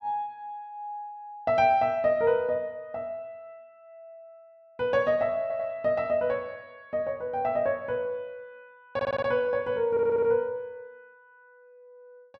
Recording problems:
audio stuttering; at 5.5 s, at 9 s and at 10 s

